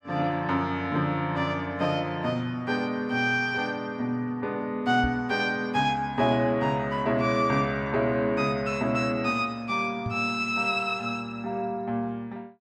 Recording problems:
microphone bump; at 5 s and at 10 s; peak -1 dB vs average level

